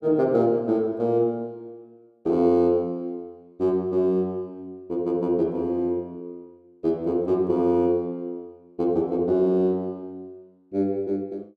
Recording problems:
none

